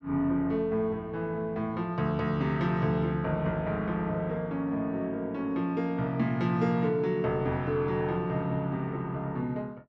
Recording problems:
none

